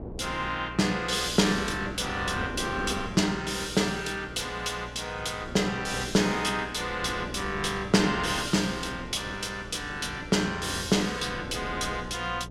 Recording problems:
electrical hum; 60 Hz, harmonics up to 480 Hz, SNR 17 dB
wind on the microphone; below 440 Hz, SNR 14 dB

